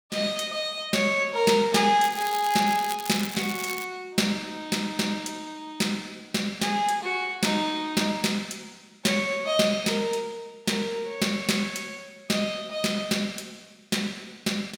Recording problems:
crackling; from 2 to 4 s; loose cable, SNR 11 dB

